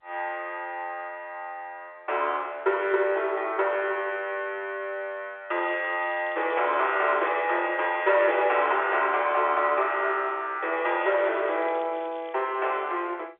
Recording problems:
telephone audio; 340 Hz to 3.6 kHz, G.711
crackling; from 5.5 to 7.5 s and from 11 to 12 s; loose cable, SNR 27 dB

